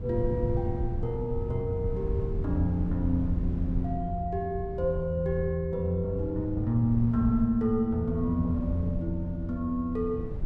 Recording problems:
low-frequency rumble; below 120 Hz, SNR 6 dB

